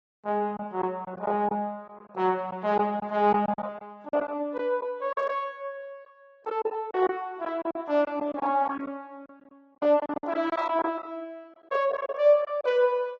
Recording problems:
lossy compression; AAC, log-spectral distance 2 dB, nothing above 7.3 kHz
packet loss; 9% of the sound replaced, filled with silence

